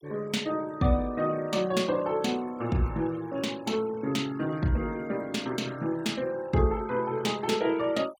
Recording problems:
noise reduction artefacts; signal-to-artefact ratio 21 dB

